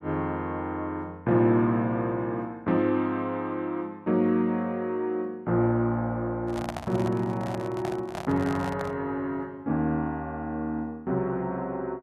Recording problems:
microphone handling noise; from 6.5 to 9 s; peak -2 dB vs average level

